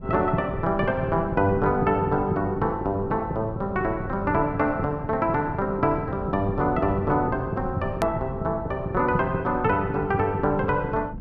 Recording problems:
rumble; below 190 Hz, SNR 13 dB
hard cut with a click; at 8 s

